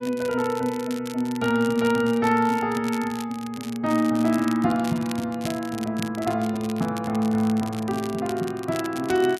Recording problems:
crackling; vinyl, SNR 16 dB

